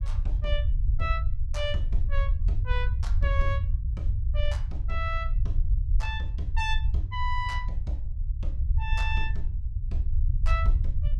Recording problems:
low-frequency rumble; below 68 Hz, SNR -6 dB

